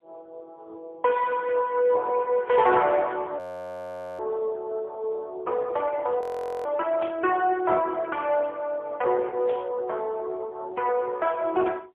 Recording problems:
phone line; 320 Hz to 2.6 kHz, AMR-NB, then MP3
static burst; at 2.5 s, at 7 s and at 9.5 s; peak -9 dB vs average level
audio freezing; at 3.5 s for 1 s and at 6 s

